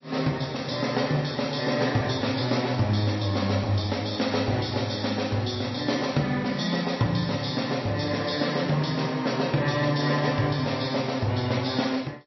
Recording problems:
lossy compression; MP3, log-spectral distance 7 dB, nothing above 5.7 kHz

